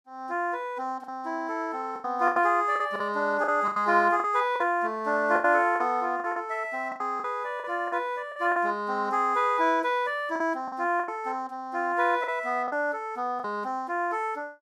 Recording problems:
packet loss; 9% of the sound replaced, filled with the last packet

